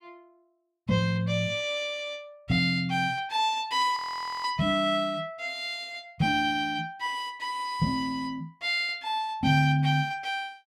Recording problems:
frozen audio; at 4 s

